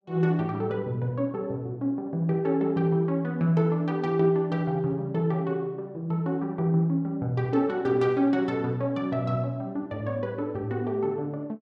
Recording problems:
none

